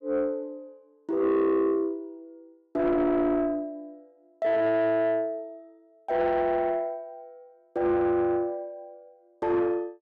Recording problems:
distorted audio; soft clipping, signal-to-distortion ratio 12 dB

